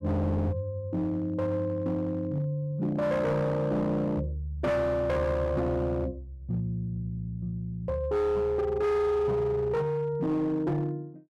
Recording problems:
distorted audio; hard clipping, signal-to-distortion ratio 10 dB

